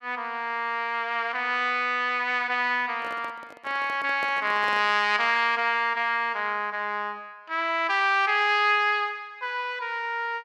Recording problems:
handling noise; from 3 to 5 s; peak -10 dB vs average level

